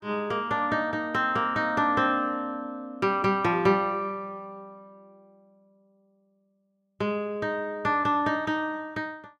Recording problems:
none

